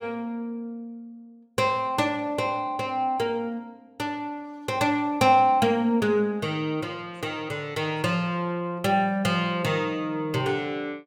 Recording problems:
none

